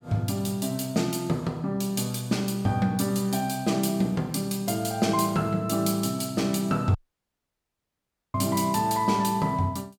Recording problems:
audio cutting out; at 7 s for 1.5 s

